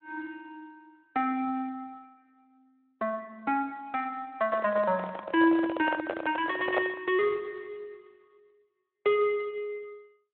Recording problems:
telephone audio; 300 Hz to 3.7 kHz, Speex
microphone handling noise; from 4.5 to 7 s; peak +6 dB vs average level

